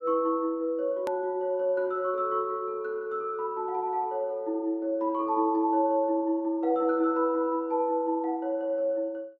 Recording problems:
click at an edit; at 1 s

